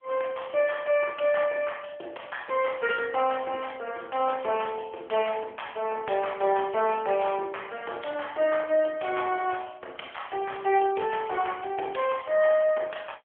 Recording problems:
phone line; 320 Hz to 3.3 kHz, AMR-NB

